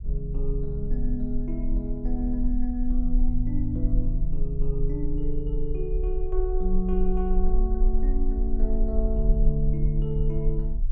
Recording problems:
rumble; below 40 Hz, strongest tone 20 Hz, SNR -2 dB

